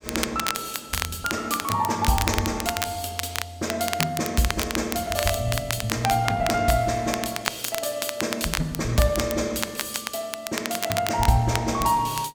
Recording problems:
crackle; vinyl, SNR 5 dB

